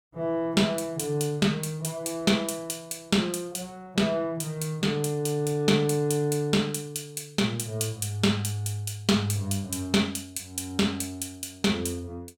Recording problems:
none

